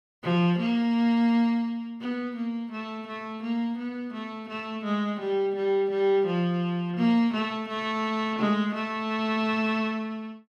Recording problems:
none

